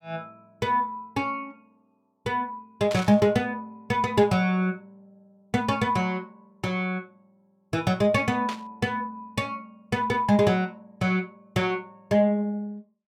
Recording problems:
burst of static; at 3 s and at 8.5 s; peak -5 dB vs average level

